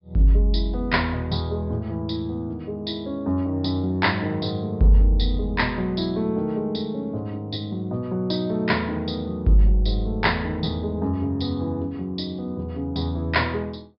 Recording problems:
treble missing; nothing above 5.2 kHz

